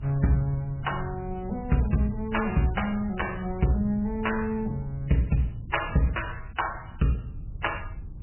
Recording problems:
codec artefacts; MP3, log-spectral distance 4 dB, nothing above 3 kHz
low-frequency rumble; below 110 Hz, SNR 12 dB

